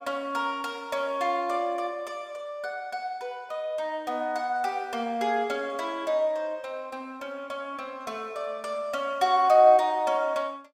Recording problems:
none

